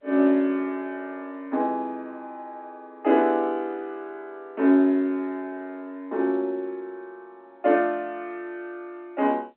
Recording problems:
phone line; 240 Hz to 3.3 kHz, G.711

